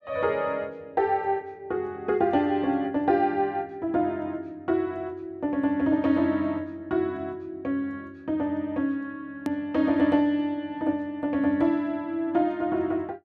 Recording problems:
click at an edit; at 9.5 s

